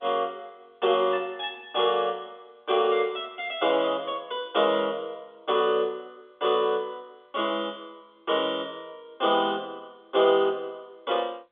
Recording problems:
telephone audio; 260 Hz to 3.6 kHz, G.711

